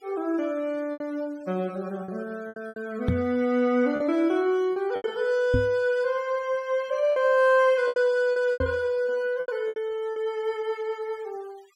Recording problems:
noise reduction artefacts; signal-to-artefact ratio 28 dB
lost packets; 8% of the sound replaced, filled with repeated pitch periods
microphone bump; at 3 s, at 5.5 s and at 8.5 s; peak +4 dB vs average level

